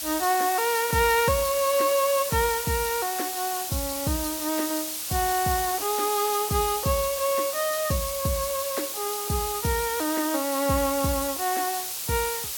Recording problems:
hiss; SNR 4 dB

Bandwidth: 17.5 kHz